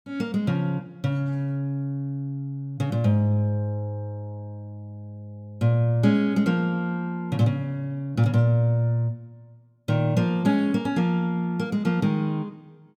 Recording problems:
none

